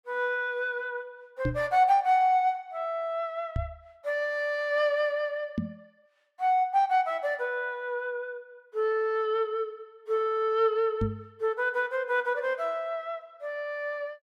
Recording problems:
microphone thump; 4 times, first at 1.5 s; peak +2 dB vs average level

